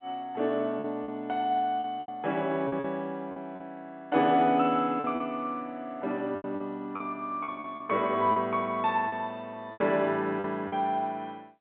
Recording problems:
phone line; 170 Hz to 3.7 kHz, G.711
lost packets; 8% of the sound replaced, filled with repeated pitch periods

